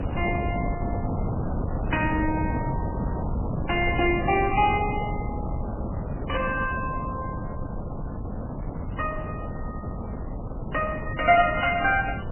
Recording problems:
lossy codec; MP3, log-spectral distance 5 dB, nothing above 2.9 kHz
wind noise; below 300 Hz, SNR 5 dB

